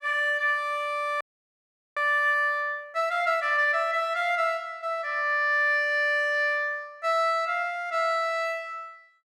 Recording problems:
audio freezing; at 1 s for 1 s

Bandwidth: 14.5 kHz